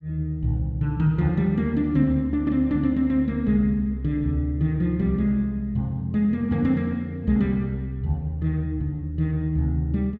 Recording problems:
none

